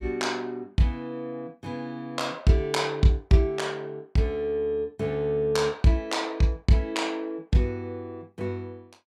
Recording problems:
none

